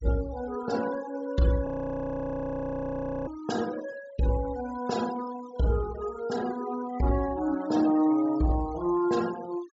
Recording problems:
treble cut off; nothing above 8 kHz
noise reduction artefacts; signal-to-artefact ratio 17 dB
audio freezing; at 1.5 s for 1.5 s

